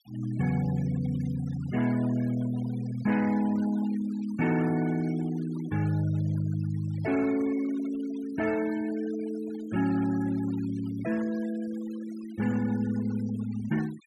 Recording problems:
denoising artefacts; signal-to-artefact ratio 19 dB

